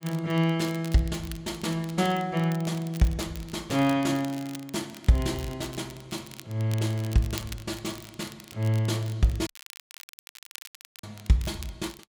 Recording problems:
crackle; vinyl, SNR 17 dB
audio cutting out; at 9.5 s for 1.5 s

